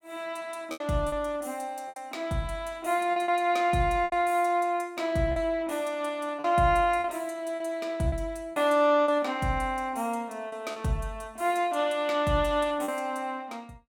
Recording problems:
packet loss; 6% of the sound replaced, filled with repeated pitch periods

